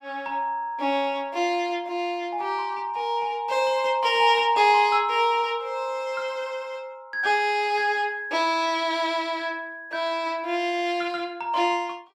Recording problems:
none

